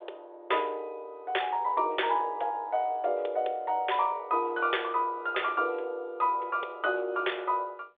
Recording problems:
phone line; 320 Hz to 3.6 kHz, G.726

